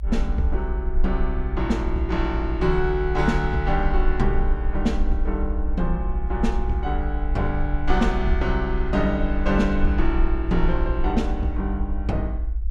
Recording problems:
rumble; below 52 Hz, SNR 2 dB

